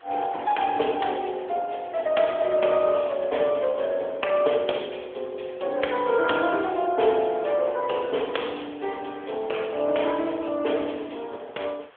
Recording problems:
phone line; 300 Hz to 3.4 kHz, AMR-NB
hiss; SNR 27 dB

